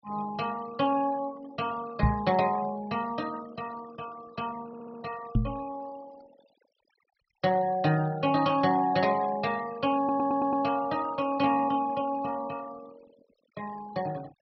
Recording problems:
low-pass filter; nothing above 5.5 kHz
noise reduction artefacts; signal-to-artefact ratio 21 dB
microphone thump; at 2 s and at 5.5 s; peak +7 dB vs average level
stutter; at 4.5 s and at 10 s

